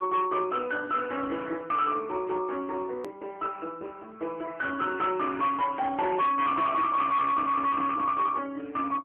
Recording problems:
telephone audio; 300 Hz to 3.6 kHz, AMR-NB
distortion; hard clipping, signal-to-distortion ratio 11 dB
click at an edit; at 3 s

